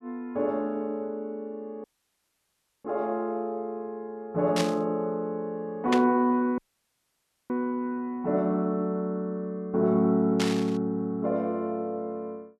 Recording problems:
audio cutting out; at 2 s for 1 s and at 6.5 s for 1 s
burst of static; at 4.5 s, at 6 s and at 10 s; peak +3 dB vs average level

